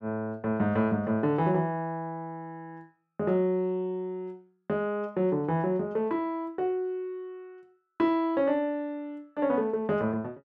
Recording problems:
none

